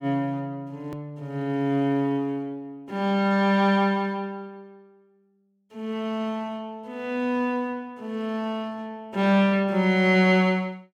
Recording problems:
hard cut with a click; at 1 s

